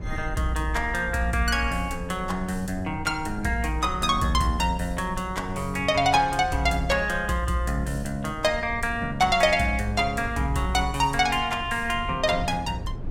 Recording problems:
low-frequency rumble; below 110 Hz, SNR 14 dB

